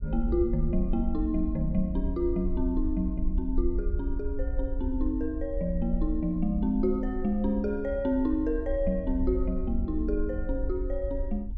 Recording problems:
low-frequency rumble; below 56 Hz, SNR 5 dB

